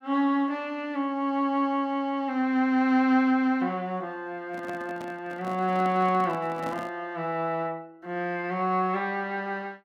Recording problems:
handling noise; from 4.5 to 7 s; peak -7 dB vs average level

